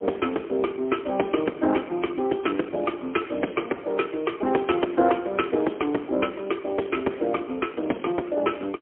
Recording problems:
telephone audio; 220 Hz to 3.3 kHz, AMR-NB, then MP3

